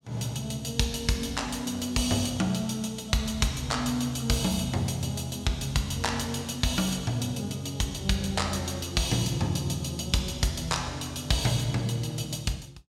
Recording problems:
none

